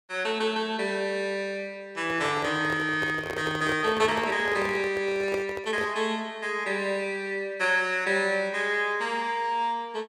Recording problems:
handling noise; from 2 to 6 s; peak -3 dB vs average level

